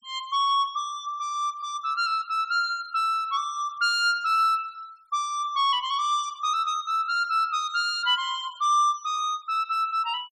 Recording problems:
denoising artefacts; signal-to-artefact ratio 27 dB

